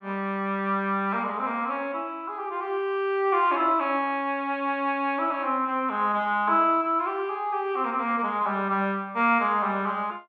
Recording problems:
none

